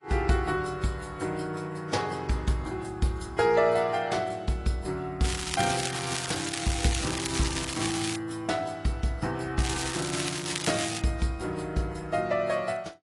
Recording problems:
lossy compression; MP3, then AAC, log-spectral distance 6 dB, nothing above 11 kHz
crackle; from 5 to 8 s and from 9.5 to 11 s; loose cable, SNR 3 dB

